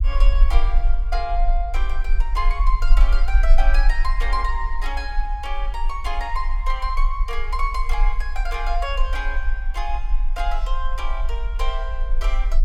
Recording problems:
rumble; below 38 Hz, strongest tone 24 Hz, SNR -5 dB

